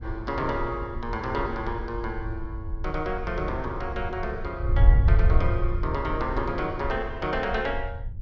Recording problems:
wind noise; below 82 Hz, SNR 0 dB

